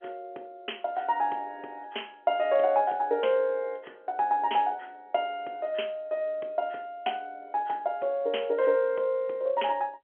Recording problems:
phone line; 280 Hz to 3.3 kHz, G.711

